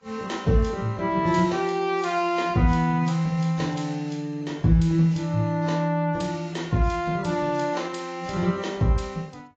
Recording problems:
codec artefacts; AAC, log-spectral distance 3 dB, nothing above 7.6 kHz

